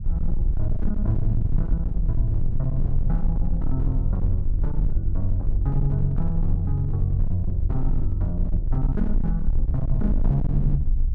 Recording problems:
distorted audio; hard clipping, signal-to-distortion ratio 8 dB
rumble; below 52 Hz, strongest tone 18 Hz, SNR 1 dB

